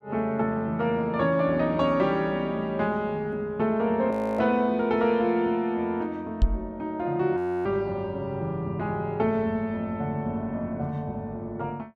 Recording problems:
frozen audio; at 4 s and at 7.5 s
microphone bump; at 6.5 s; peak +7 dB vs average level

